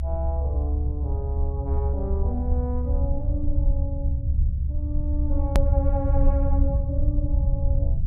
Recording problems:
low-frequency rumble; below 72 Hz, SNR -8 dB
hard cut with a click; at 5.5 s

